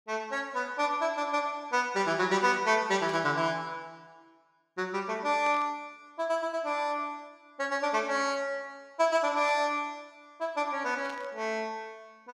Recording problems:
static burst; 4 times, first at 3 s; peak -12 dB vs average level

